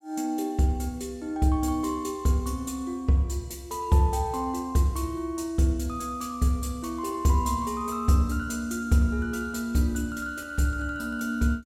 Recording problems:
none

